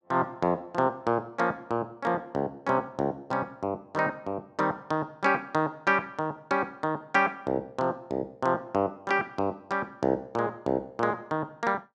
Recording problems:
none

